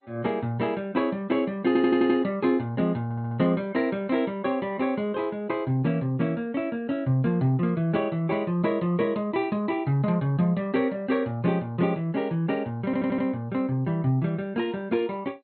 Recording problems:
lossy compression; MP2, log-spectral distance 2 dB, nothing above 3.9 kHz
stutter; at 1.5 s, at 3 s and at 13 s

